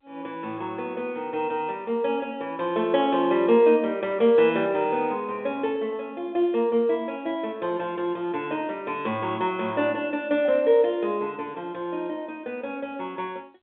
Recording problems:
phone line; 260 Hz to 3.5 kHz, G.711

